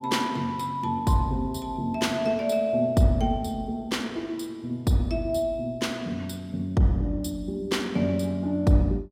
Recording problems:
none

